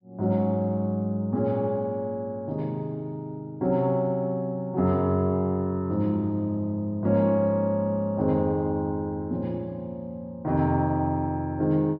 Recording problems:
treble cut off; nothing above 5.5 kHz

